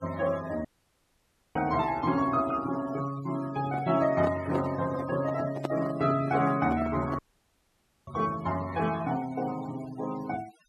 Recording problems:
denoising artefacts; signal-to-artefact ratio 17 dB
audio cutting out; at 0.5 s for 1 s and at 7 s for 1 s
microphone handling noise; from 3.5 to 7 s; peak +1 dB vs average level

